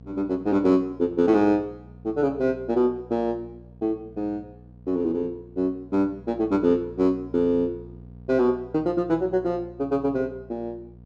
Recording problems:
hum; 60 Hz, harmonics up to 720 Hz, SNR 21 dB

